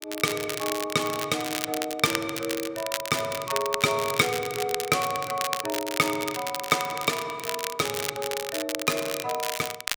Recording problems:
crackling; vinyl, SNR 5 dB

